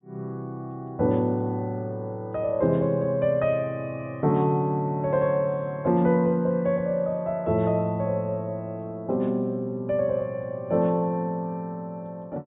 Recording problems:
low-pass filter; nothing above 4 kHz

